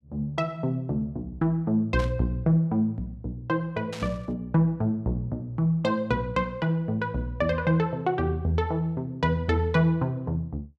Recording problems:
static burst; at 2 s and at 4 s; peak -8 dB vs average level

